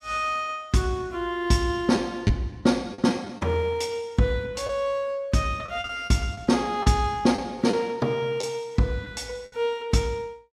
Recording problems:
packet loss; 4% of the sound replaced, filled with the last packet

